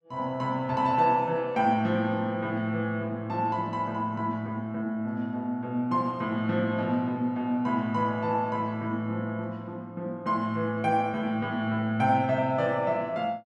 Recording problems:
none

